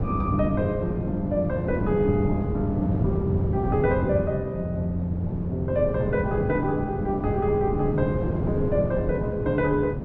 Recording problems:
wind noise; below 270 Hz, SNR 3 dB

